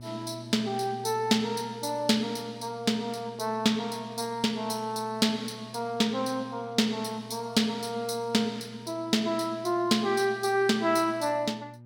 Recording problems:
hum; 60 Hz, harmonics up to 600 Hz, SNR 19 dB

